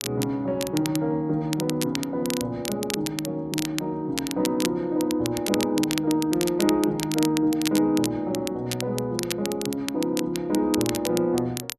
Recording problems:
crackling; vinyl, SNR 8 dB

